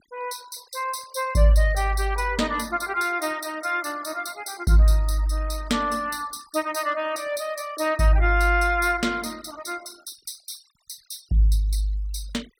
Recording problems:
noise reduction artefacts; signal-to-artefact ratio 23 dB

